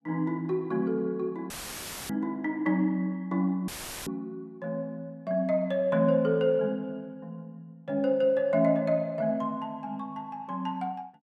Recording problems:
dropout; at 1.5 s for 0.5 s and at 3.5 s; filled with static

